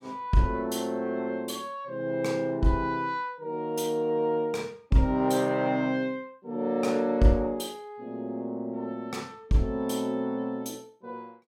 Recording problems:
none

